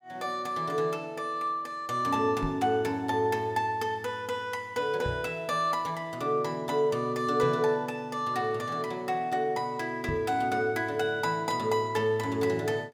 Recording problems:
knock on the microphone; 4 times, first at 2.5 s; peak -1 dB vs average level

